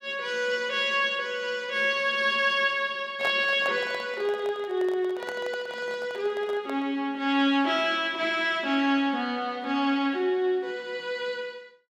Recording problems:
handling noise; from 3 to 7 s; peak -3 dB vs average level

